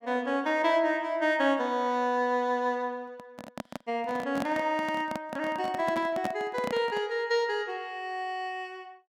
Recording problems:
microphone handling noise; from 3 to 7 s; peak 0 dB vs average level

